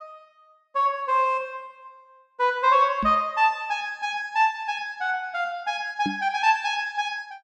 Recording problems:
microphone bump; at 3 s and at 6 s; peak -1 dB vs average level

